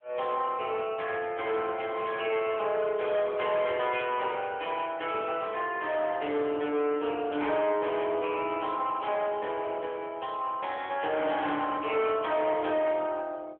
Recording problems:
phone line; 280 Hz to 3.4 kHz, AMR-NB
distorted audio; hard clipping, uneven, signal-to-distortion ratio 10 dB

